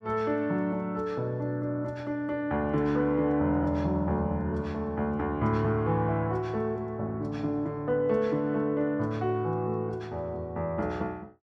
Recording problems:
none

